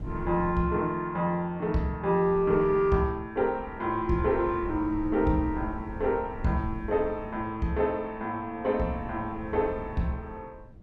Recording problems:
wind noise; below 130 Hz, SNR 14 dB

